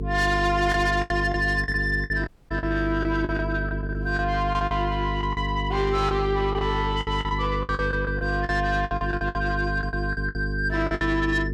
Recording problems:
distorted audio; soft clipping, signal-to-distortion ratio 10 dB
electrical hum; 50 Hz, harmonics up to 450 Hz, SNR 4 dB
lost packets; 13% of the sound replaced, filled with the last packet
audio cutting out; at 2.5 s

